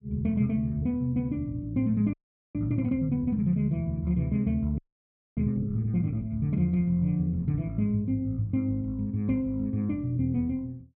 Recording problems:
audio freezing; at 2 s and at 5 s for 0.5 s

